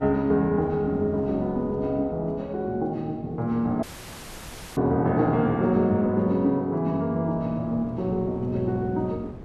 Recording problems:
wind on the microphone; below 340 Hz, SNR 20 dB
audio cutting out; at 4 s for 1 s

